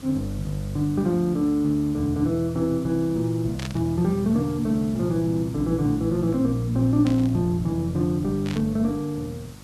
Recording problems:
hum; 50 Hz, harmonics up to 850 Hz, SNR 22 dB
background hiss; slope -2 dB per octave, SNR 23 dB
static burst; at 3.5 s, at 7 s and at 8.5 s; peak -7 dB vs average level

